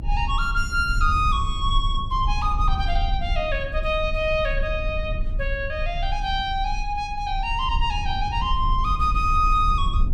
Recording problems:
rumble; below 60 Hz, strongest tone 30 Hz, SNR 4 dB

